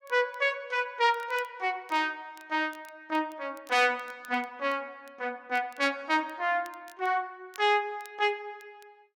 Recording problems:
crackle; vinyl, SNR 28 dB

